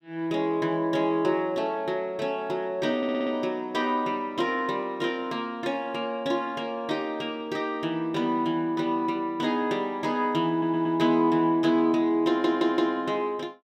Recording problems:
stutter; at 3 s, at 11 s and at 12 s

